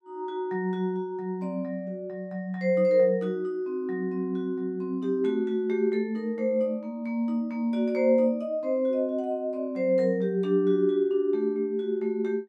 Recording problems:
none

